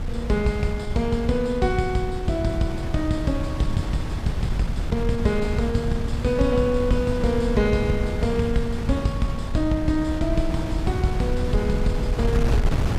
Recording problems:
wind on the microphone; below 130 Hz, SNR 4 dB

